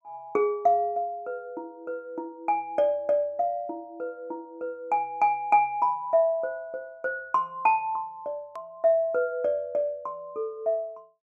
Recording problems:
hard cut with a click; at 8.5 s

